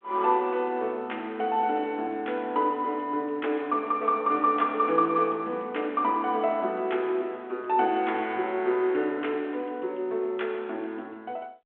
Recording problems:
telephone audio; 260 Hz to 3.5 kHz, G.726

